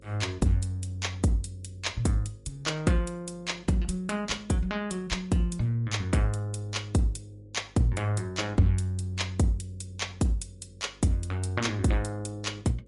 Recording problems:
lossy compression; MP3, log-spectral distance 2 dB, nothing above 11 kHz
electrical hum; 50 Hz, harmonics up to 550 Hz, SNR 27 dB

